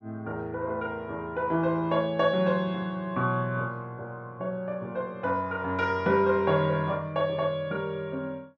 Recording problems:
treble missing; nothing above 8 kHz

